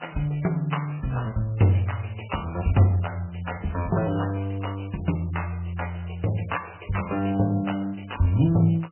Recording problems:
lossy codec; MP3, log-spectral distance 8 dB, nothing above 3 kHz

